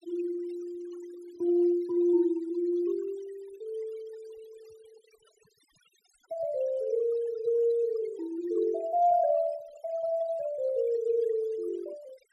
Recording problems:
noise reduction artefacts; signal-to-artefact ratio 26 dB

